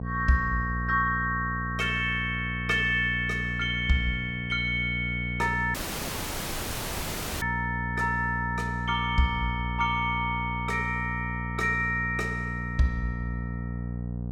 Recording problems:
hum; 60 Hz, harmonics up to 720 Hz, SNR 6 dB
dropout; at 5.5 s for 1.5 s

